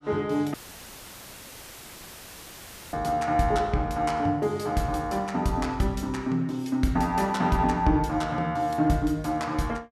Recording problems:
audio cutting out; at 0.5 s for 2.5 s; filled with static

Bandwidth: 14.5 kHz